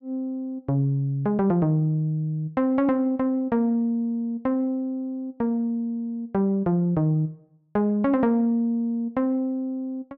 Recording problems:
none

